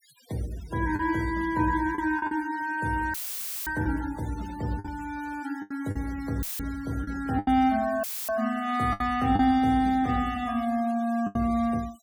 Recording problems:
noise reduction artefacts; signal-to-artefact ratio 21 dB
packet loss; 6% of the sound replaced, filled with the last packet
audio cutting out; at 3 s for 0.5 s, at 6.5 s and at 8 s; filled with static

